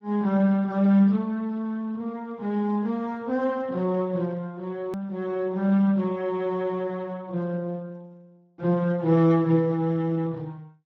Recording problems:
lossy codec; Speex, log-spectral distance 2 dB, nothing above 17.1 kHz
edit click; at 5 s

